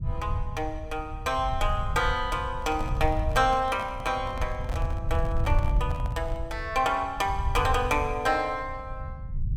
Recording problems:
low-frequency rumble; below 88 Hz, SNR 5 dB
microphone handling noise; from 2.5 to 6.5 s; peak -7 dB vs average level

